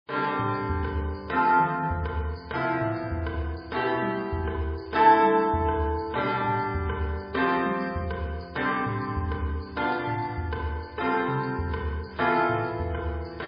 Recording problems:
lossy codec; MP3, log-spectral distance 3 dB, nothing above 5 kHz

